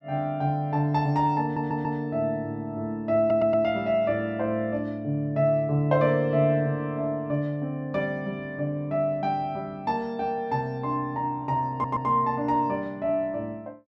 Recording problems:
audio stuttering; at 1.5 s, at 3 s and at 12 s

